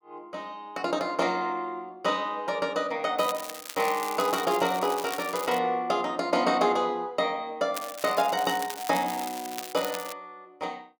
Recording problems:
crackling; from 3 to 5.5 s and from 7.5 to 10 s; loose cable, SNR 11 dB

